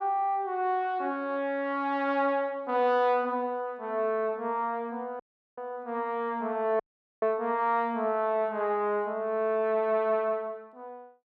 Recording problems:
audio cutting out; at 5 s and at 7 s

